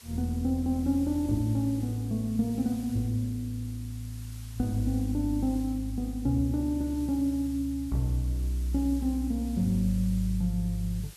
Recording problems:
background hiss; slope +1 dB per octave, SNR 21 dB

